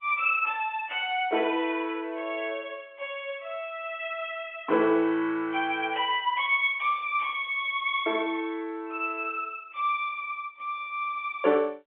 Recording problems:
phone line; 240 Hz to 3.3 kHz, G.711

